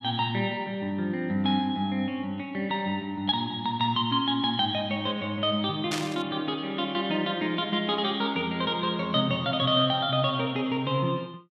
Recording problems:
burst of static; at 6 s; peak 0 dB vs average level

